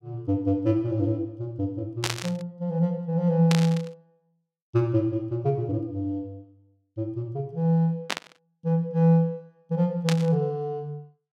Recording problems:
static burst; 4 times, first at 2 s; peak +3 dB vs average level

